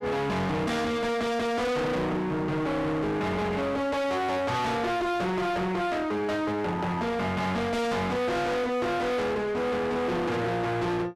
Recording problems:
distorted audio; hard clipping, uneven, signal-to-distortion ratio 5 dB

